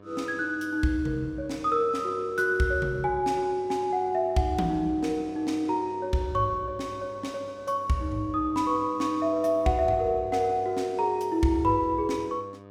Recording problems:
electrical hum; 50 Hz, harmonics up to 2.3 kHz, SNR 21 dB

